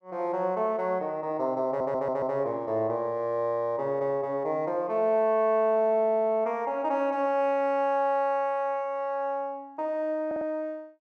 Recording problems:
audio stuttering; at 1.5 s and at 10 s

